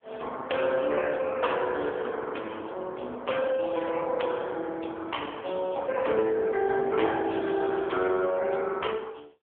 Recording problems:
phone line; 260 Hz to 3.3 kHz, AMR-NB

